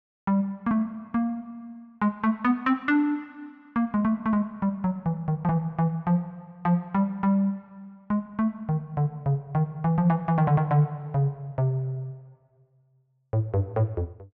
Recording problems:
treble cut off; nothing above 8 kHz

